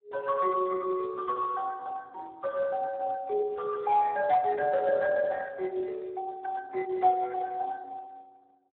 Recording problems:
phone line; 320 Hz to 2 kHz, Speex

